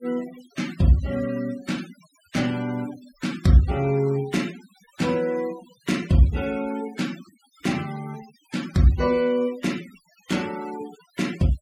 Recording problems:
denoising artefacts; signal-to-artefact ratio 19 dB

